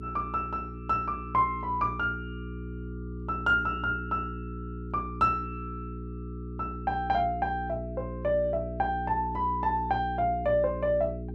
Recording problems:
hum; 60 Hz, harmonics up to 420 Hz, SNR 9 dB

